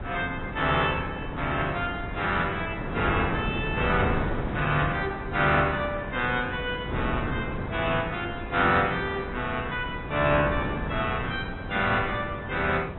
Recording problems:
treble missing; nothing above 3.7 kHz
lossy compression; AAC, log-spectral distance 2 dB
wind noise; below 530 Hz, SNR 6 dB

